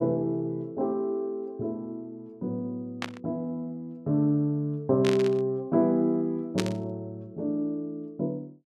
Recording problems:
static burst; at 3 s, at 5 s and at 6.5 s; peak +1 dB vs average level

